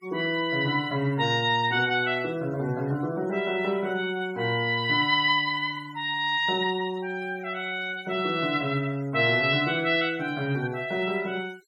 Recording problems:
denoising artefacts; signal-to-artefact ratio 25 dB

